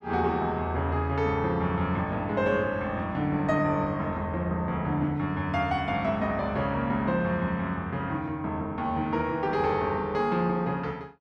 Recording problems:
none

